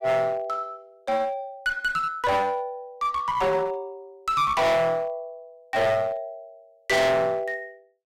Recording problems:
distortion; hard clipping, uneven, signal-to-distortion ratio 5 dB

